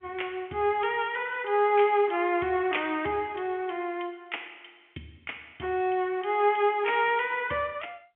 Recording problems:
telephone audio; 220 Hz to 3.2 kHz, G.711

